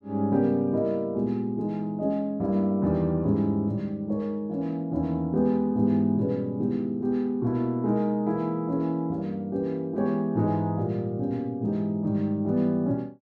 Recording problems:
none

